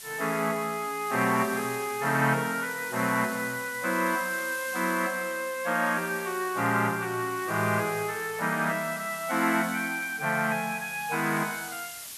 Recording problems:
background hiss; slope +3 dB per octave, SNR 12 dB

